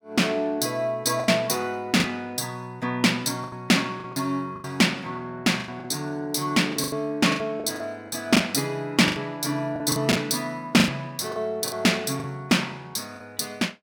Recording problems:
packet loss; 9% of the sound replaced, filled with the last packet

